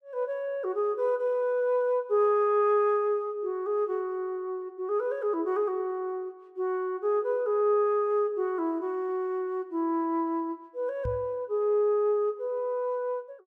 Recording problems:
microphone thump; at 11 s; peak -4 dB vs average level

